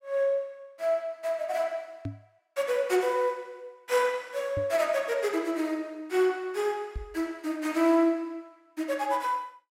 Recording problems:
knock on the microphone; at 2 s, at 4.5 s and at 7 s; peak -2 dB vs average level

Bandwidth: 16 kHz